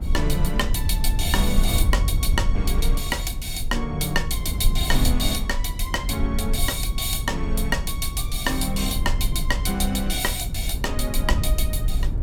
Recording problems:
rumble; below 66 Hz, SNR 1 dB

